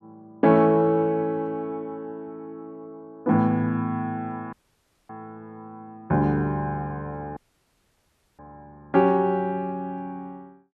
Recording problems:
audio cutting out; at 4.5 s for 0.5 s and at 7.5 s for 1 s

